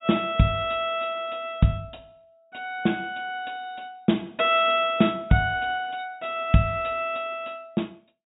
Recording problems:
treble missing; nothing above 4 kHz

